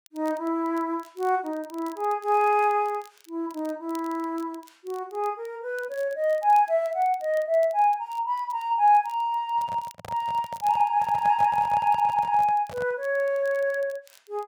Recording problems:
crackle; vinyl, SNR 29 dB
handling noise; from 9.5 to 13 s; peak -10 dB vs average level

